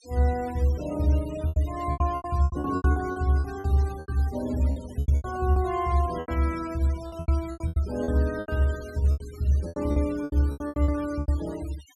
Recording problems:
denoising artefacts; signal-to-artefact ratio 20 dB
lost packets; 17% of the sound replaced, filled with repeated pitch periods

